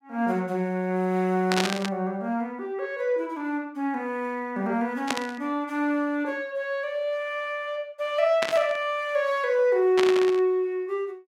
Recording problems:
burst of static; 4 times, first at 1.5 s; peak +4 dB vs average level

